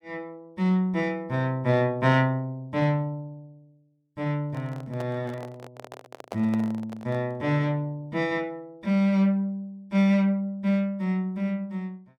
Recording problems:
microphone handling noise; from 4.5 to 7.5 s; peak -5 dB vs average level

